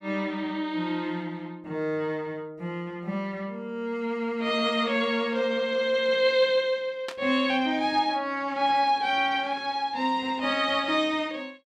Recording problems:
static burst; at 7 s; peak -5 dB vs average level

